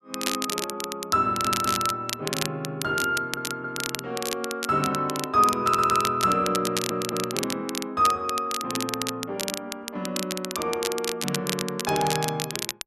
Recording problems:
crackling; vinyl, SNR 5 dB
audio stuttering; 4 times, first at 1.5 s

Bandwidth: 13 kHz